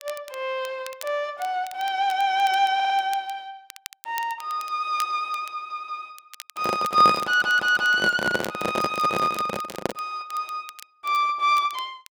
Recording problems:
crackling; vinyl, SNR 20 dB
audio stuttering; at 3 s, at 5.5 s and at 7 s
microphone handling noise; from 6.5 to 10 s; peak +2 dB vs average level

